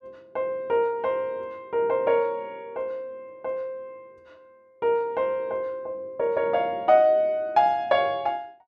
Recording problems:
none

